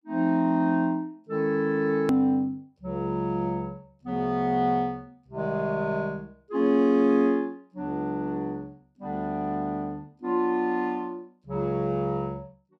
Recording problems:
hard cut with a click; at 2 s

